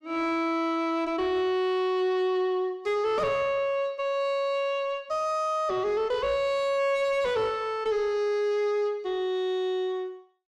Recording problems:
distorted audio; soft clipping, signal-to-distortion ratio 10 dB

